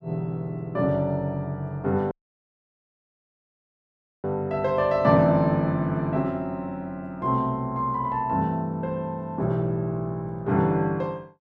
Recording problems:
dropout; at 2 s for 2 s

